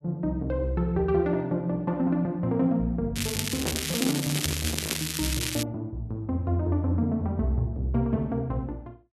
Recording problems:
crackling; from 3 to 5.5 s; loose cable, SNR 2 dB
microphone handling noise; from 3.5 to 5 s; peak -1 dB vs average level

